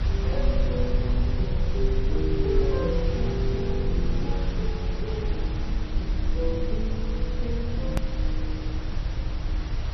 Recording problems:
lossy compression; MP3, log-spectral distance 3 dB, nothing above 13.1 kHz
hiss; slope -3 dB per octave, SNR 9 dB
rumble; below 72 Hz, SNR -3 dB
click at an edit; at 8 s

